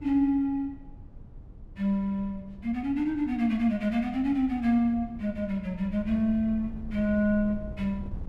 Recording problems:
wind noise; below 120 Hz, SNR 17 dB

